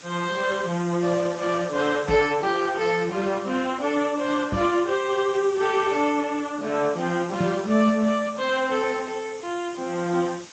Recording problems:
codec artefacts; Speex, log-spectral distance 9 dB
background hiss; slope 0 dB per octave, SNR 20 dB
microphone thump; at 2 s, at 4.5 s and at 7.5 s; peak 0 dB vs average level

